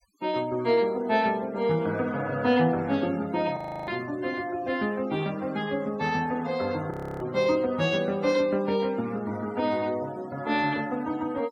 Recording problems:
noise reduction artefacts; signal-to-artefact ratio 22 dB
frozen audio; at 3.5 s and at 7 s

